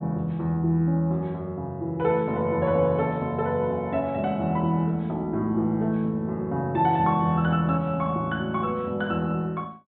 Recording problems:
treble missing; nothing above 4 kHz

